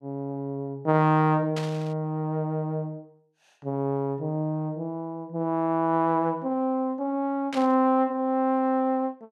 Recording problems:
burst of static; at 1.5 s and at 7.5 s; peak -6 dB vs average level

